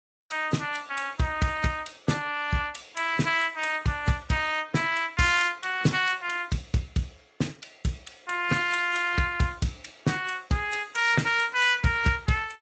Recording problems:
codec artefacts; AAC, then Speex, log-spectral distance 5 dB, nothing above 7.8 kHz

